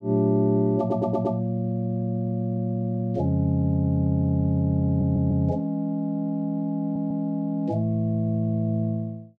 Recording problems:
audio stuttering; at 1 s, at 5 s and at 7 s

